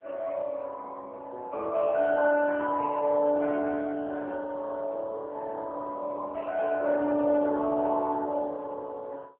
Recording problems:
telephone audio; 280 Hz to 2 kHz, AMR-NB

